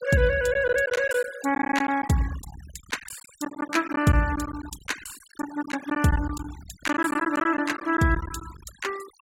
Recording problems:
noise reduction artefacts; signal-to-artefact ratio 17 dB
lost packets; 10% of the sound replaced, filled with silence

